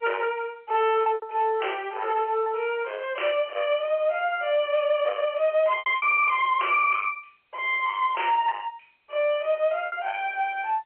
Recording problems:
telephone audio; 340 Hz to 3.2 kHz, G.711
distorted audio; hard clipping, signal-to-distortion ratio 11 dB
lost packets; 3% of the sound replaced, filled with repeated pitch periods

